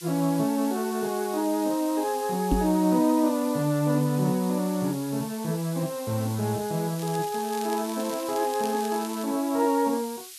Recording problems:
hiss; SNR 14 dB
microphone thump; at 2.5 s; peak +6 dB vs average level
crackle; from 7 to 9.5 s; loose cable, SNR 16 dB

